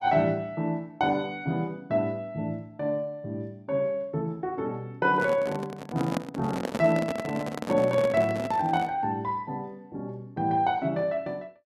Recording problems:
microphone handling noise; from 5 to 9 s; peak +3 dB vs average level

